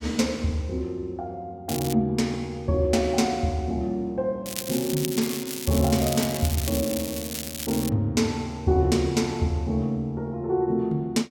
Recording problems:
crackling; at 1.5 s and from 4.5 to 8 s; loose cable, SNR 7 dB

